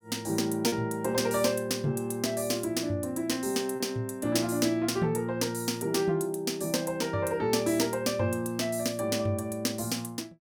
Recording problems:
lost packets; 0.8% of the sound replaced, filled with repeated pitch periods

